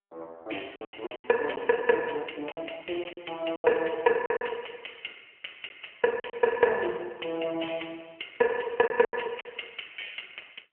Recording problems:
telephone audio; 280 Hz to 3.1 kHz, AMR-NB
packet loss; 7% of the sound replaced, filled with silence

